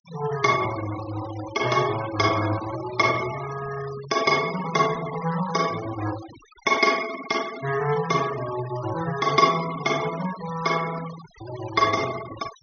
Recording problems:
treble cut off; nothing above 6.3 kHz
denoising artefacts; signal-to-artefact ratio 13 dB

